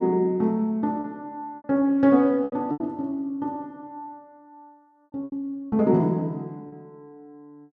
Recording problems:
packet loss; 7% of the sound replaced, filled with repeated pitch periods

